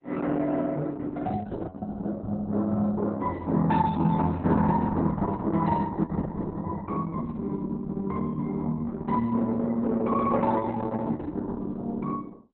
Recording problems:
codec artefacts; Opus, log-spectral distance 3 dB, nothing above 4 kHz

